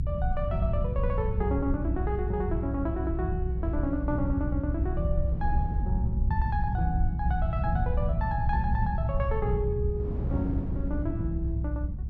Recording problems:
rumble; below 90 Hz, SNR -1 dB
wind on the microphone; below 270 Hz, SNR 9 dB

